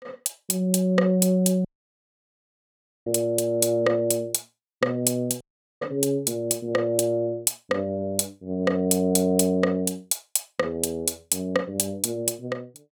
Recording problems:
audio cutting out; at 1.5 s for 1.5 s and at 5.5 s

